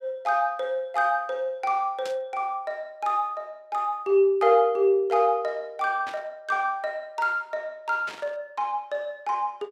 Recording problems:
static burst; at 2 s, at 6 s and at 8 s; peak -9 dB vs average level

